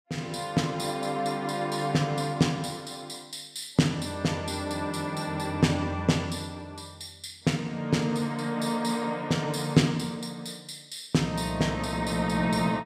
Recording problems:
none

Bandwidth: 15.5 kHz